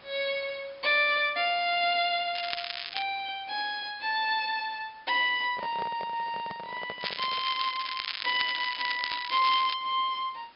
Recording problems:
low-pass filter; nothing above 5.5 kHz
background hiss; SNR 27 dB
crackle; at 2.5 s and from 7 to 10 s; loose cable, SNR 6 dB
microphone handling noise; from 5.5 to 7.5 s; peak -7 dB vs average level

